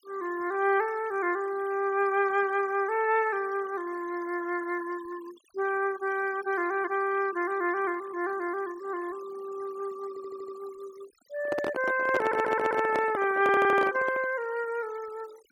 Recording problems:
denoising artefacts; signal-to-artefact ratio 21 dB
stutter; at 10 s, at 12 s and at 13 s
microphone handling noise; from 11 to 14 s; peak +2 dB vs average level

